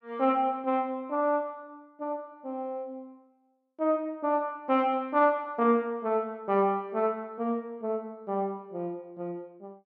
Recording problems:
none

